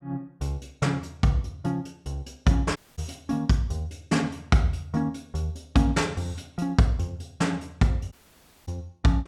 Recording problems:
audio cutting out; at 3 s and at 8 s for 0.5 s

